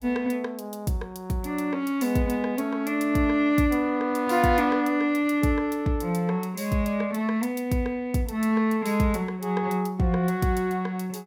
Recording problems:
none

